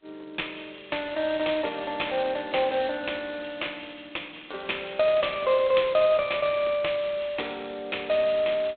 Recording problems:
telephone audio; 320 Hz to 3.8 kHz, G.726

